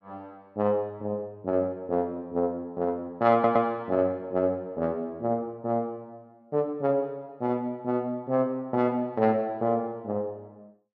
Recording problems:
stutter; at 3.5 s

